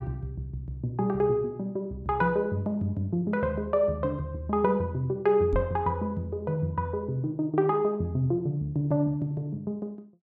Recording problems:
microphone bump; at 5.5 s; peak 0 dB vs average level

